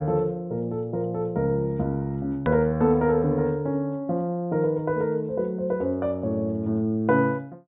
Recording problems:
treble missing; nothing above 4 kHz
edit click; at 2.5 s

